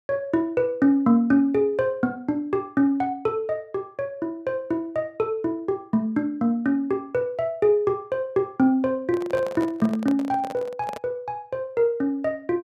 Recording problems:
microphone handling noise; from 9 to 11 s; peak -6 dB vs average level

